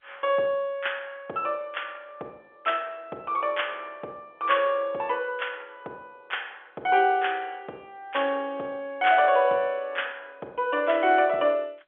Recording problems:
telephone audio; 300 Hz to 3.5 kHz, G.711

